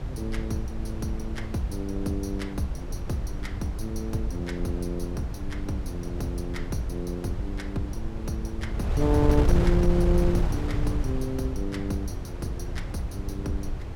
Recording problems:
wind noise; below 110 Hz, SNR 0 dB

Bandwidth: 17 kHz